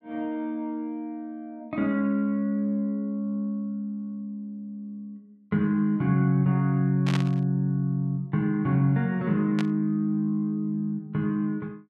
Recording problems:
static burst; at 7 s and at 9.5 s; peak -2 dB vs average level

